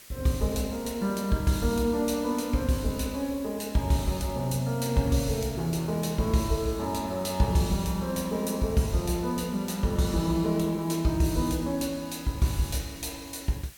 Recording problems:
hiss; SNR 20 dB

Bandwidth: 17.5 kHz